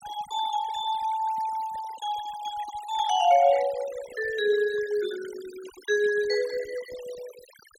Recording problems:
noise reduction artefacts; signal-to-artefact ratio 18 dB

